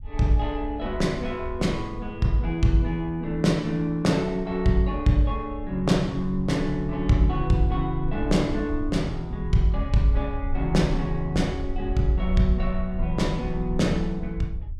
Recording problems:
low-frequency rumble; below 64 Hz, SNR 10 dB

